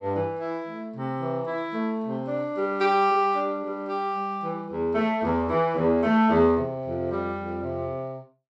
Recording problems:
none

